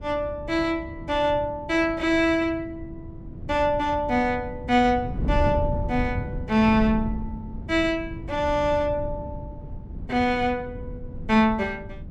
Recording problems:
wind on the microphone; below 160 Hz, SNR 11 dB

